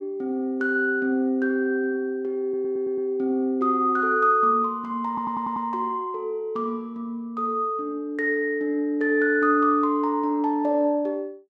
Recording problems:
stutter; at 2.5 s and at 5 s

